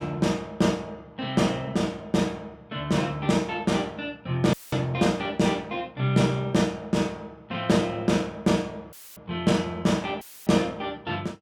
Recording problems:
dropout; at 4.5 s, at 9 s and at 10 s; filled with static

